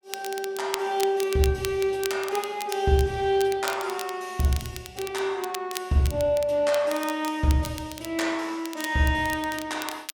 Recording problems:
crackle; vinyl, SNR 13 dB

